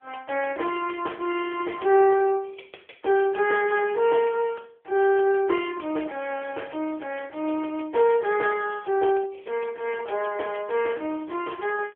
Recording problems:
telephone audio; 320 Hz to 3.3 kHz, AMR-NB

